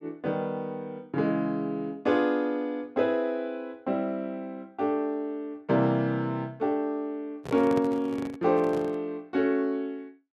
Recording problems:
handling noise; from 7.5 to 9 s; peak -2 dB vs average level

